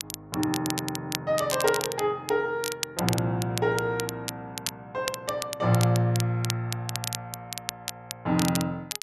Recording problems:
crackling; vinyl, SNR 7 dB

